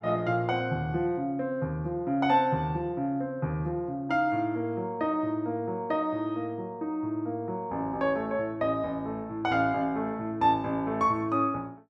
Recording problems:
none

